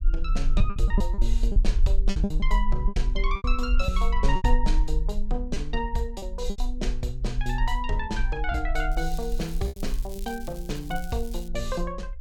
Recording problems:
low-frequency rumble; below 44 Hz, strongest tone 22 Hz, SNR -2 dB
packet loss; 7% of the sound replaced, filled with repeated pitch periods
crackle; from 9 to 11 s; loose cable, SNR 15 dB

